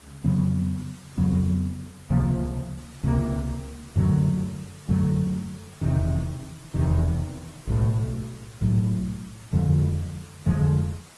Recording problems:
lossy codec; Opus, then AAC, log-spectral distance 6 dB
hiss; slope -2 dB per octave, SNR 25 dB

